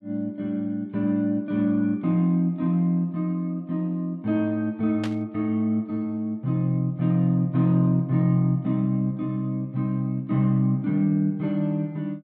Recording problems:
static burst; at 5 s; peak -7 dB vs average level

